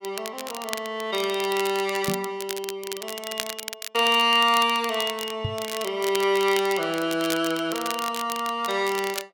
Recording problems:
crackling; vinyl, SNR 10 dB
knock on the microphone; at 2 s and at 5.5 s; peak 0 dB vs average level

